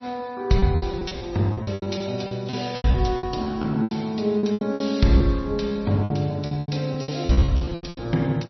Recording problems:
lossy compression; MP3, log-spectral distance 4 dB, nothing above 5.8 kHz
lost packets; 19% of the sound replaced, filled with repeated pitch periods

